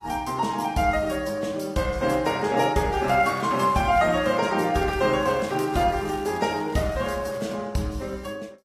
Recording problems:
codec artefacts; AAC, log-spectral distance 3 dB, nothing above 13.1 kHz
crackle; from 3 to 4.5 s and from 5 to 7.5 s; loose cable, SNR 24 dB

